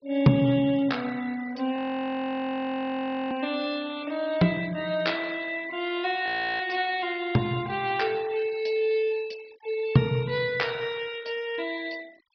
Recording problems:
treble cut off; nothing above 5.5 kHz
denoising artefacts; signal-to-artefact ratio 21 dB
frozen audio; at 2 s for 1.5 s and at 6.5 s

